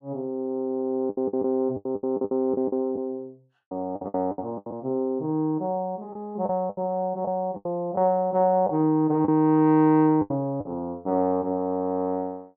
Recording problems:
packet loss; 10% of the sound replaced, filled with the last packet

